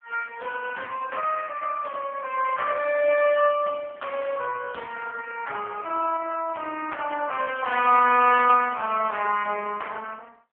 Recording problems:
telephone audio; 260 Hz to 2.9 kHz, AMR-NB

